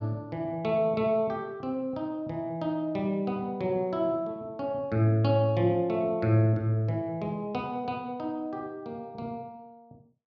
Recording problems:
none

